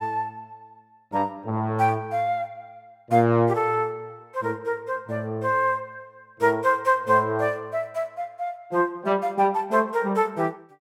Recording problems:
none

